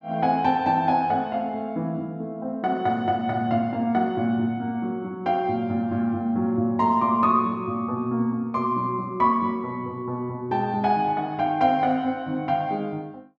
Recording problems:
none

